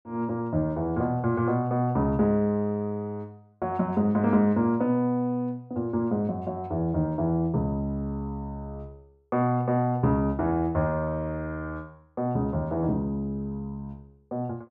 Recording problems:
none

